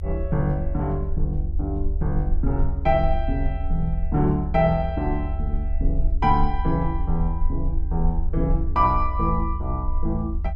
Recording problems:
rumble; below 74 Hz, SNR 2 dB

